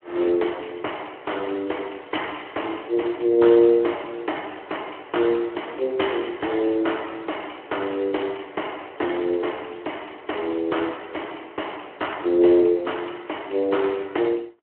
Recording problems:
telephone audio; 300 Hz to 3.1 kHz, Speex

